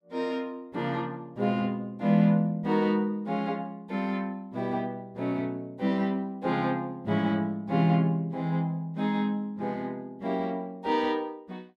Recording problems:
none

